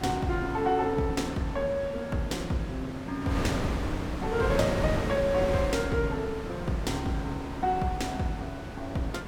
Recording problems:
wind on the microphone; below 790 Hz, SNR 5 dB

